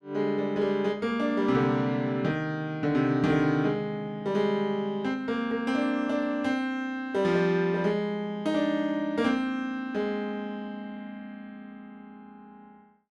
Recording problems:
none

